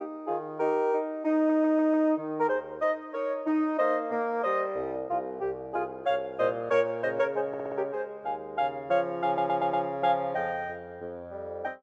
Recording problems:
stutter; at 1.5 s, at 7.5 s and at 9.5 s

